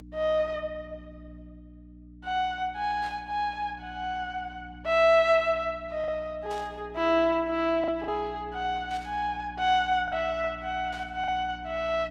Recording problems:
lossy compression; Opus, log-spectral distance 2 dB
hum; 60 Hz, harmonics up to 300 Hz, SNR 19 dB
lost packets; 1.9% of the sound replaced, filled with the last packet
static burst; 4 times, first at 3 s; peak -14 dB vs average level

